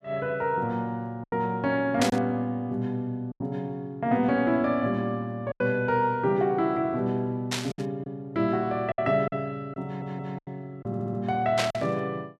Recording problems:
lost packets; 5% of the sound replaced, filled with silence
static burst; at 2 s, at 7.5 s and at 12 s; peak +4 dB vs average level
audio stuttering; at 10 s and at 11 s

